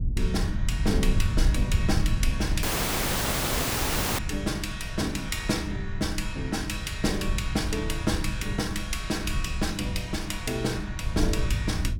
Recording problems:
low-frequency rumble; below 94 Hz, SNR 2 dB
dropout; at 2.5 s for 1.5 s

